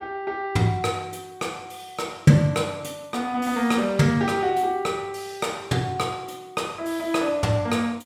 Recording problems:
none

